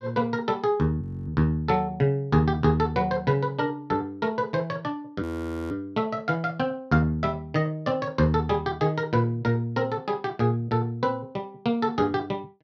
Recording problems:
frozen audio; at 1 s and at 5 s

